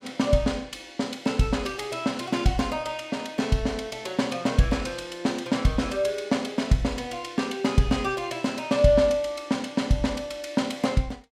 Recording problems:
none

